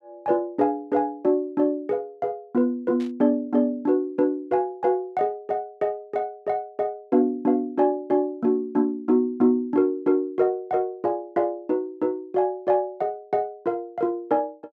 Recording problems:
static burst; at 3 s; peak -16 dB vs average level

